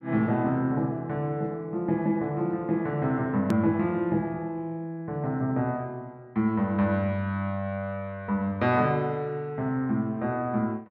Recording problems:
hard cut with a click; at 3.5 s

